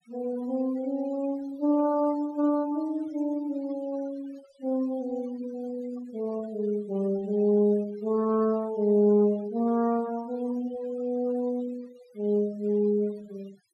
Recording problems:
noise reduction artefacts; signal-to-artefact ratio 23 dB

